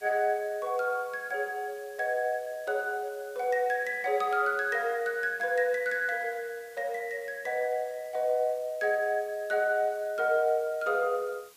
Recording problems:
background hiss; slope 0 dB per octave, SNR 25 dB

